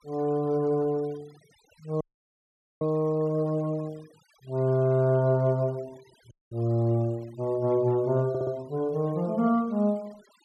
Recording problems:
denoising artefacts; signal-to-artefact ratio 28 dB
audio cutting out; at 2 s for 1 s and at 6.5 s
stutter; at 8.5 s

